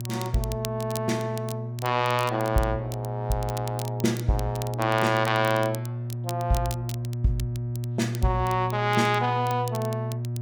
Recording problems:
electrical hum; 60 Hz, harmonics up to 600 Hz, SNR 5 dB
crackling; vinyl, SNR 15 dB

